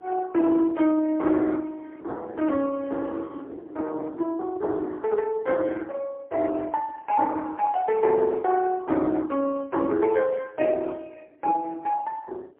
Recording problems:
phone line; 260 Hz to 2.2 kHz, AMR-NB, then MP3
wind noise; below 440 Hz, SNR 20 dB

